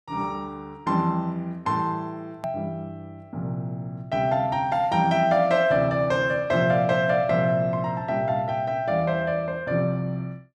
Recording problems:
edit click; at 2.5 s

